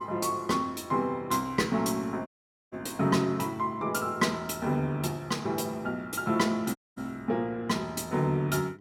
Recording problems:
electrical hum; 50 Hz, harmonics up to 900 Hz, SNR 24 dB
dropout; at 2.5 s and at 7 s

